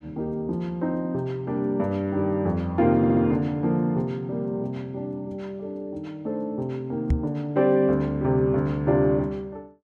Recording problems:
audio stuttering; at 3 s
microphone bump; at 7 s; peak +6 dB vs average level

